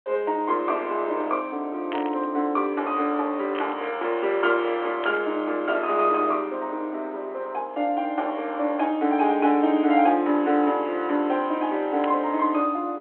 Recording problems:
phone line; 260 Hz to 3.4 kHz, G.726
burst of static; 4 times, first at 2 s; peak -6 dB vs average level

